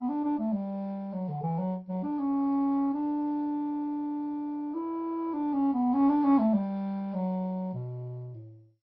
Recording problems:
lossy codec; MP2, log-spectral distance 2 dB, nothing above 5.3 kHz

